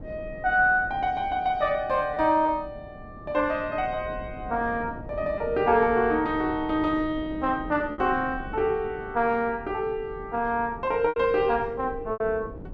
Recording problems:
wind on the microphone; below 320 Hz, SNR 16 dB
lost packets; 2% of the sound replaced, filled with repeated pitch periods

